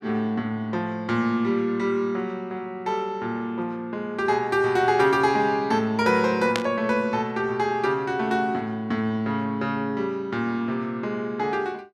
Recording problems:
burst of static; at 6.5 s; peak +3 dB vs average level

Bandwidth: 13.5 kHz